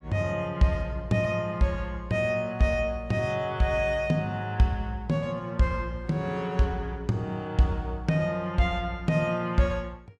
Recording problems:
none

